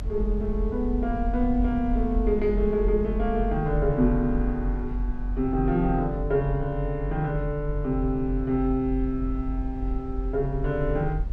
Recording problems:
rumble; below 48 Hz, strongest tone 44 Hz, SNR 5 dB

